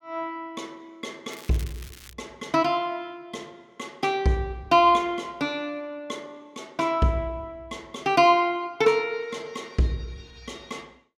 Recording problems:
crackle; at 1.5 s; loose cable, SNR 20 dB

